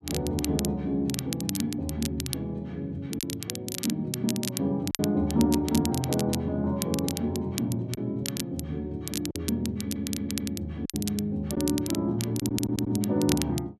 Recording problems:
crackling; vinyl, SNR 7 dB
lost packets; 2% of the sound replaced, filled with silence
stutter; at 10 s and at 12 s

